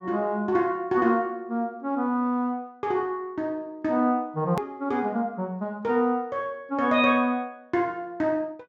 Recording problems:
treble cut off; nothing above 8 kHz
edit click; at 4.5 s

